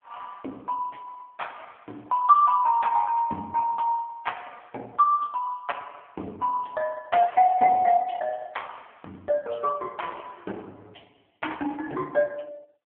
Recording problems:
telephone audio; 220 Hz to 2.8 kHz, AMR-NB

